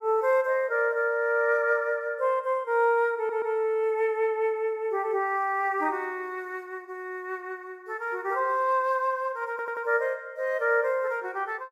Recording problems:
audio stuttering; at 3 s and at 9.5 s

